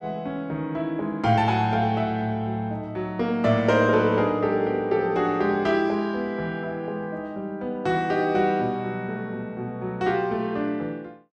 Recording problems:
none

